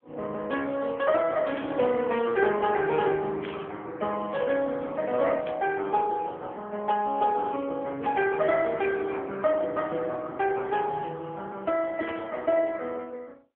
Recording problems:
telephone audio; 190 Hz to 3.3 kHz, AMR-NB
burst of static; 5 times, first at 1.5 s; peak -8 dB vs average level

